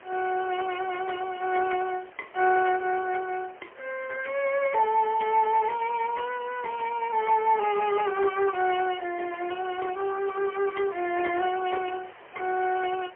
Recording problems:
phone line; 240 Hz to 3 kHz, AMR-NB, then MP3
background hiss; SNR 23 dB

